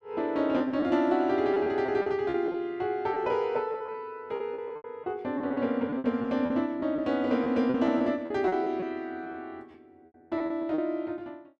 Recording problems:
lost packets; 11% of the sound replaced, filled with repeated pitch periods

